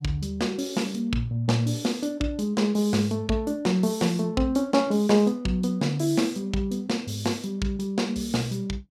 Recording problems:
none

